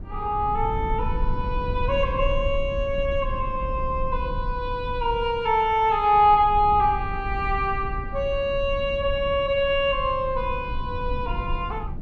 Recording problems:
rumble; below 76 Hz, SNR 9 dB

